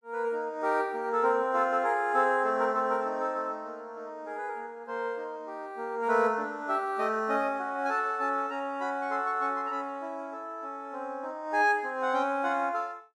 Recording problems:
none

